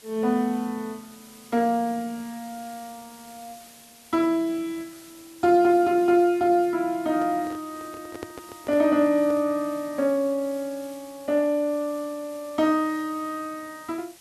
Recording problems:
hiss; slope 0 dB per octave, SNR 23 dB
handling noise; from 7 to 9.5 s; peak -8 dB vs average level

